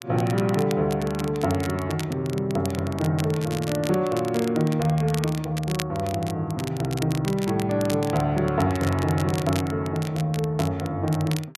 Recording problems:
crackle; vinyl, SNR 14 dB

